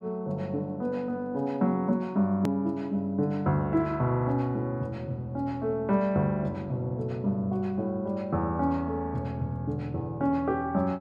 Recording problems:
edit click; at 2.5 s

